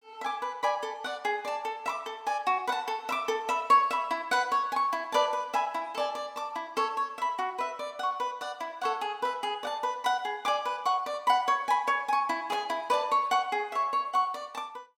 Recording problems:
none

